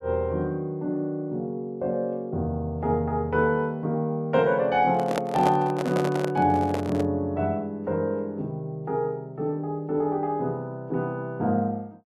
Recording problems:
microphone handling noise; from 5 to 7 s; peak +3 dB vs average level

